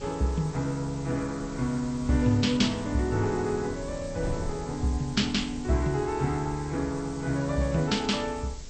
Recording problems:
codec artefacts; MP2, then Vorbis, log-spectral distance 8 dB, nothing above 8 kHz
hiss; slope +4 dB per octave, SNR 19 dB
wind on the microphone; below 130 Hz, SNR 16 dB

